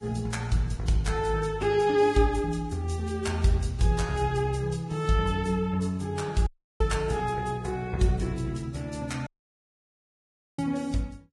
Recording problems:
lossy compression; Vorbis, log-spectral distance 3 dB, nothing above 11 kHz
dropout; at 6.5 s and at 9.5 s for 1.5 s

